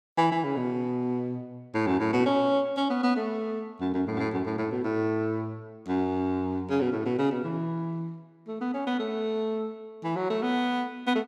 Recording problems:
none

